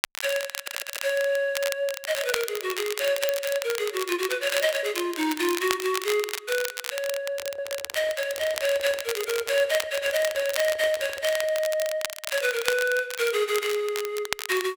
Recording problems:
crackling; vinyl, SNR 7 dB
stutter; at 0.5 s and at 7.5 s
microphone handling noise; from 7.5 to 12 s; peak -10 dB vs average level

